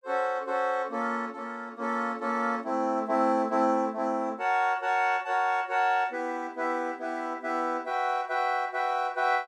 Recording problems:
none

